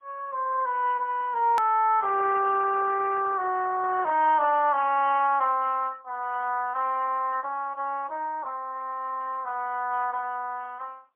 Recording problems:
phone line; 280 Hz to 3.1 kHz, AMR-NB, then MP3
hard cut with a click; at 1.5 s

